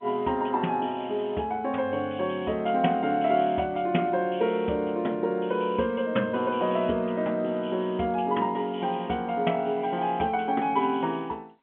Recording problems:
phone line; 170 Hz to 3.5 kHz, G.711

